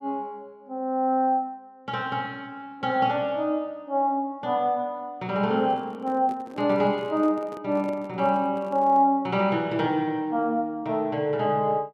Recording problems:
microphone handling noise; from 5.5 to 9 s; peak -10 dB vs average level

